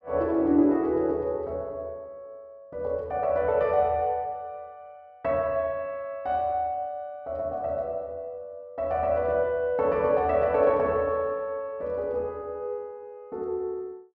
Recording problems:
none

